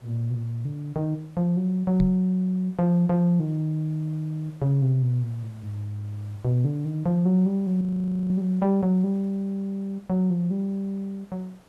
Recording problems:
hiss; slope -6 dB per octave, SNR 30 dB
knock on the microphone; at 2 s; peak +3 dB vs average level
frozen audio; at 8 s

